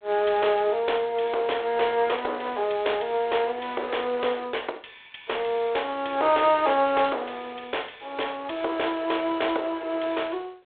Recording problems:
phone line; 370 Hz to 3.6 kHz, G.726
distorted audio; hard clipping, uneven, signal-to-distortion ratio 14 dB

